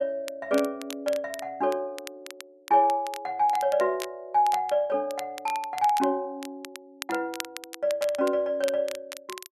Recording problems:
crackle; vinyl, SNR 15 dB

